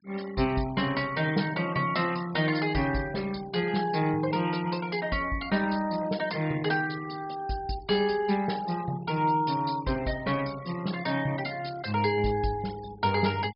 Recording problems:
low-pass filter; nothing above 5.5 kHz
denoising artefacts; signal-to-artefact ratio 18 dB

